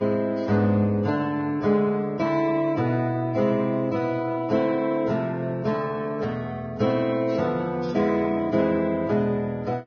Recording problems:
codec artefacts; Vorbis, log-spectral distance 2 dB

